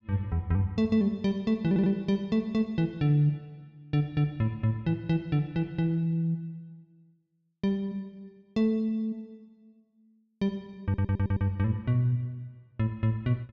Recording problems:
audio stuttering; at 1.5 s and at 11 s

